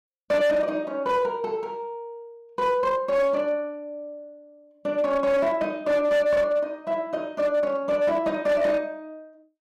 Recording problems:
distortion; hard clipping, signal-to-distortion ratio 11 dB

